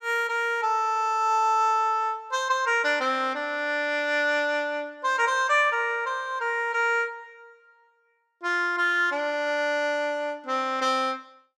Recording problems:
none

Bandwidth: 14.5 kHz